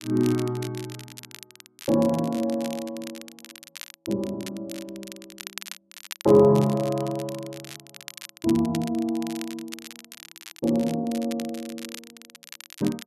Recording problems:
crackle; vinyl, SNR 16 dB

